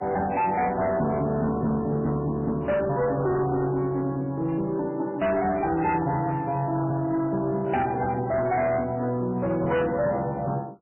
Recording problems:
lossy codec; MP3, log-spectral distance 2 dB, nothing above 2.7 kHz
distortion; soft clipping, signal-to-distortion ratio 11 dB

